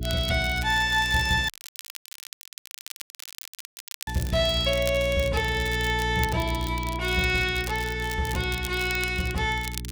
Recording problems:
hum; 60 Hz, harmonics up to 420 Hz, SNR 8 dB
crackle; vinyl, SNR 14 dB
dropout; at 1.5 s for 2.5 s

